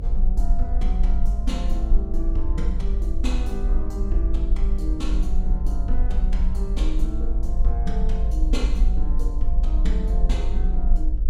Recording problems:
electrical hum; 50 Hz, harmonics up to 600 Hz, SNR 8 dB
rumble; below 50 Hz, strongest tone 18 Hz, SNR -8 dB

